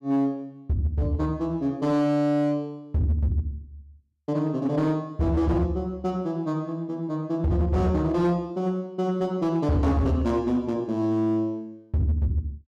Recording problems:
distortion; hard clipping, signal-to-distortion ratio 11 dB

